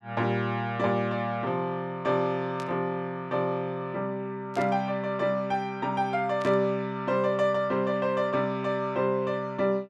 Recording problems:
static burst; at 2.5 s, at 4.5 s and at 6.5 s; peak -12 dB vs average level

